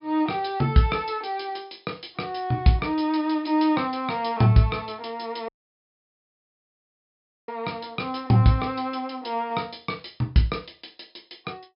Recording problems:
treble missing; nothing above 5.5 kHz
dropout; at 5.5 s for 2 s

